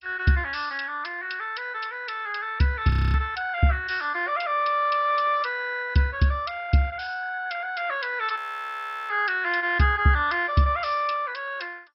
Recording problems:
lossy compression; MP2, log-spectral distance 5 dB, nothing above 5.3 kHz
frozen audio; at 3 s and at 8.5 s for 0.5 s

